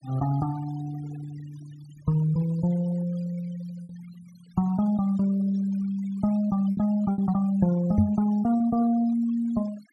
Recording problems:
noise reduction artefacts; signal-to-artefact ratio 22 dB
lost packets; 2% of the sound replaced, filled with repeated pitch periods
knock on the microphone; at 8 s; peak +6 dB vs average level

